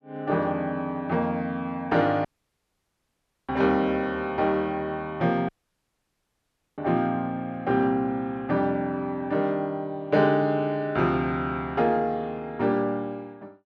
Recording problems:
audio cutting out; at 2.5 s for 1 s and at 5.5 s for 1.5 s

